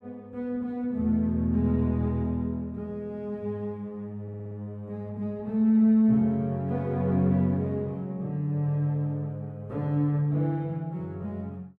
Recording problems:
audio stuttering; at 4 s

